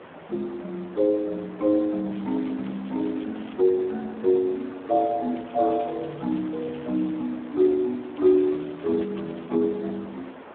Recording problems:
telephone audio; 220 Hz to 2.2 kHz, Speex
hiss; SNR 17 dB
crackle; from 2 to 3.5 s, from 5.5 to 7 s and from 8 to 9.5 s; loose cable, SNR 27 dB

